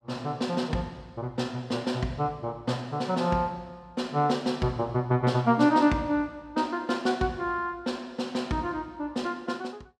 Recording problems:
none

